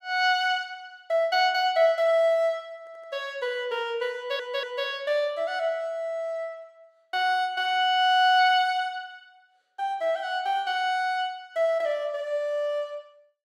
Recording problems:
audio stuttering; at 3 s and at 4 s

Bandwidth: 16.5 kHz